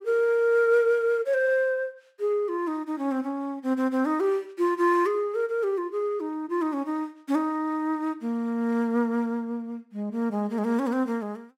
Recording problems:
none

